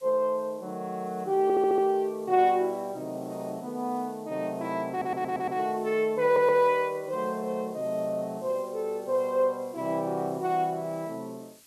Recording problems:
background hiss; SNR 27 dB
stutter; at 1.5 s, at 5 s and at 6 s

